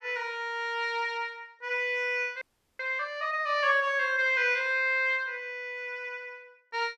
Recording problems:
audio freezing; at 2.5 s

